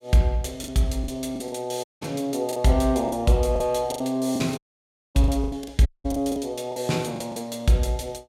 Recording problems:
packet loss; 11% of the sound replaced, filled with the last packet
dropout; at 2 s, at 4.5 s for 0.5 s and at 6 s

